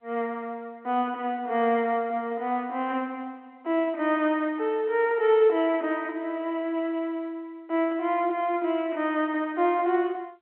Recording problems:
telephone audio; 320 Hz to 3.7 kHz, G.711

